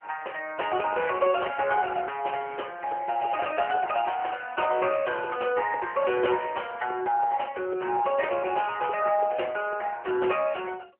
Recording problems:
phone line; 320 Hz to 3 kHz, AMR-NB

